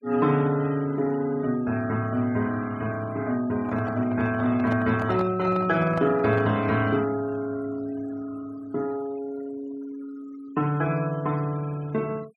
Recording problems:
denoising artefacts; signal-to-artefact ratio 21 dB
handling noise; from 3.5 to 6.5 s; peak -4 dB vs average level

